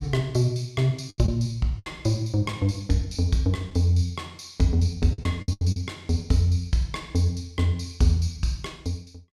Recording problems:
packet loss; 5% of the sound replaced, filled with the last packet

